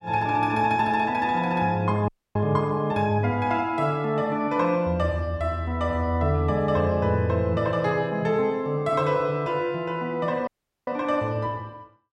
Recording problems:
audio cutting out; at 2 s and at 10 s

